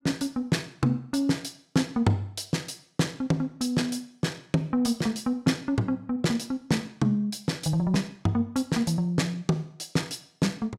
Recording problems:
none

